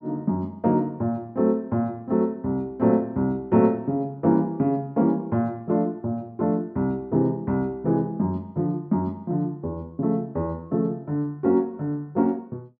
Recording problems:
none

